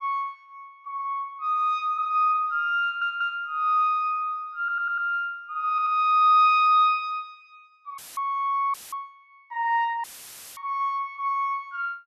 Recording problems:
audio stuttering; at 3 s, at 4.5 s and at 5.5 s
dropout; at 8 s, at 8.5 s and at 10 s for 0.5 s; filled with static

